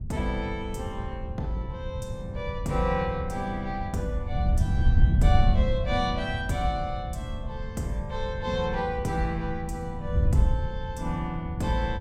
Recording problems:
wind on the microphone; below 96 Hz, SNR 0 dB

